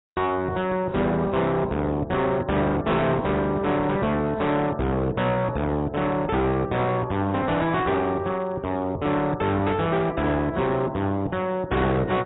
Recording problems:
lossy codec; AAC, log-spectral distance 2 dB, nothing above 3.8 kHz
distortion; hard clipping, signal-to-distortion ratio 7 dB

